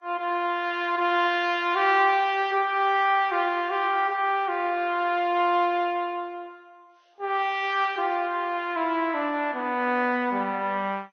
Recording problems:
lossy compression; Vorbis, then MP2, log-spectral distance 3 dB, nothing above 6.3 kHz

